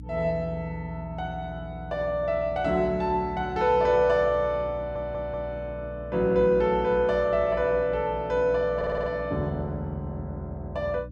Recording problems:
hum; 60 Hz, harmonics up to 300 Hz, SNR 15 dB
audio stuttering; at 5 s and at 9 s

